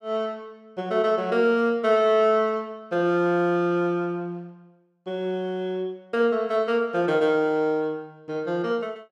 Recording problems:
none

